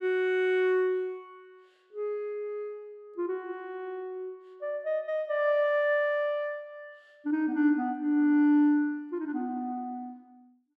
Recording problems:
none

